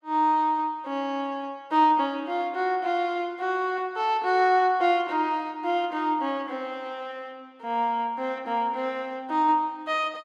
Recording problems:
none

